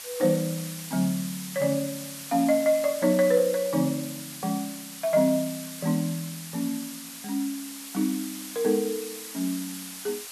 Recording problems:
hiss; slope +2 dB per octave, SNR 10 dB

